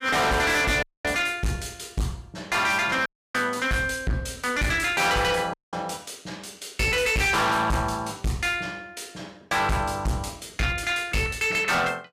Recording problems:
distortion; hard clipping, signal-to-distortion ratio 6 dB
audio cutting out; at 1 s, at 3 s and at 5.5 s

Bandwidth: 15 kHz